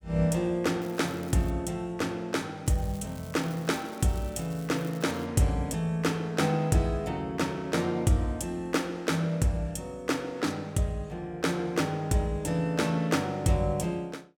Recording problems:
crackling; at 1 s and from 2.5 to 5.5 s; loose cable, SNR 22 dB

